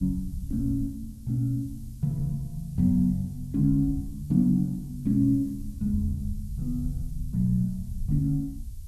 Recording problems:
hiss; SNR 29 dB
rumble; below 82 Hz, SNR 11 dB

